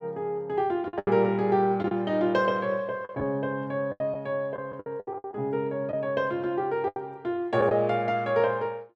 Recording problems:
packet loss; 8% of the sound replaced, filled with the last packet

